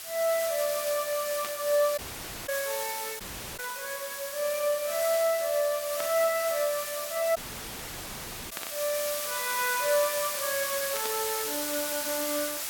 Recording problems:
hiss; slope +2 dB per octave, SNR 3 dB
burst of static; 5 times, first at 1.5 s; peak -4 dB vs average level
audio cutting out; at 2 s for 0.5 s, at 3 s and at 7.5 s for 1 s

